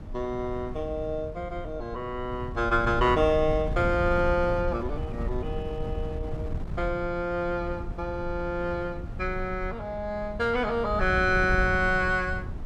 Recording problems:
wind on the microphone; below 120 Hz, SNR 8 dB

